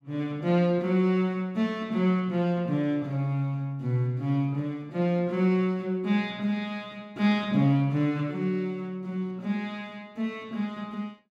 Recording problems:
none

